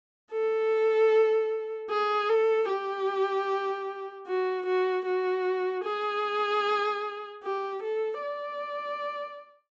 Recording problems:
treble missing; nothing above 8 kHz

